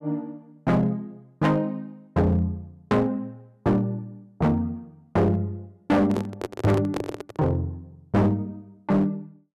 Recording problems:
distortion; hard clipping, uneven, signal-to-distortion ratio 8 dB
microphone handling noise; from 6 to 7.5 s; peak 0 dB vs average level

